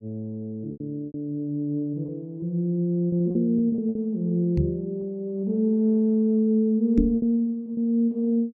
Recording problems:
packet loss; 7% of the sound replaced, filled with repeated pitch periods
knock on the microphone; at 4.5 s and at 7 s; peak +5 dB vs average level

